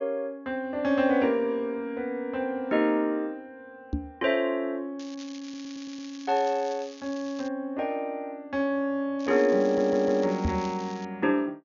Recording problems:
treble missing; nothing above 6.9 kHz
microphone bump; at 4 s and at 10 s; peak +2 dB vs average level
crackle; from 5 to 7.5 s and from 9 to 11 s; loose cable, SNR 20 dB
stutter; at 5.5 s and at 9.5 s

